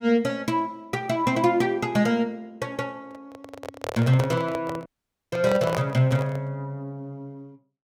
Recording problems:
handling noise; from 3 to 6.5 s; peak 0 dB vs average level
dropout; at 5 s

